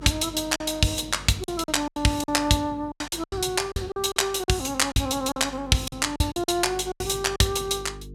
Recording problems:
electrical hum; 50 Hz, harmonics up to 450 Hz, SNR 20 dB
packet loss; 12% of the sound replaced, filled with silence

